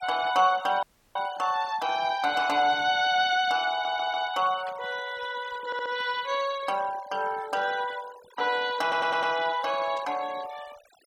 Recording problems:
noise reduction artefacts; signal-to-artefact ratio 19 dB
audio cutting out; at 1 s
static burst; at 2.5 s, at 4.5 s and at 10 s; peak -15 dB vs average level
stutter; at 3.5 s, at 5.5 s and at 9 s

